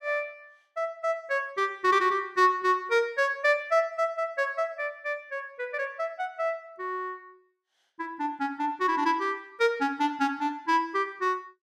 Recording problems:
none

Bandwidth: 15.5 kHz